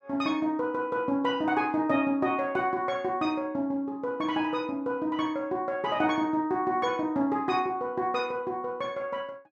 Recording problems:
none

